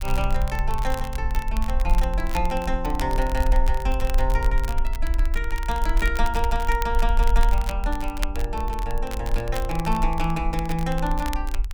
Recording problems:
rumble; below 46 Hz, SNR -1 dB
crackling; vinyl, SNR 12 dB

